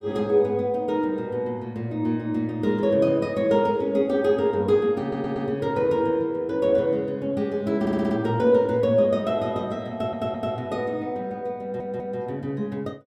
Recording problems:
audio stuttering; 4 times, first at 5 s

